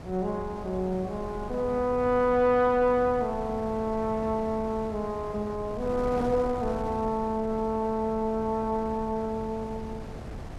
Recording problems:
wind noise; below 510 Hz, SNR 13 dB

